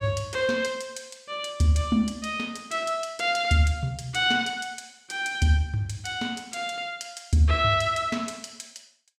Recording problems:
none

